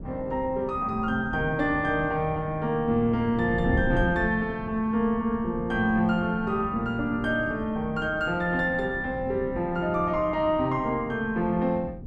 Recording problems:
wind on the microphone; below 230 Hz, SNR 11 dB

